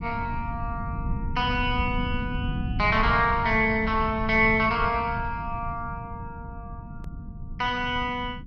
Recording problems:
low-frequency rumble; below 160 Hz, SNR 8 dB
hard cut with a click; at 7 s

